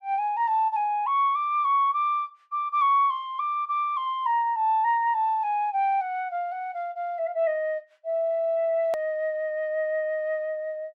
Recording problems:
click at an edit; at 9 s

